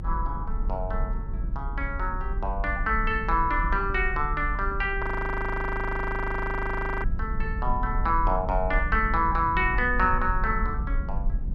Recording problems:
rumble; below 54 Hz, SNR 5 dB
audio freezing; at 5 s for 2 s

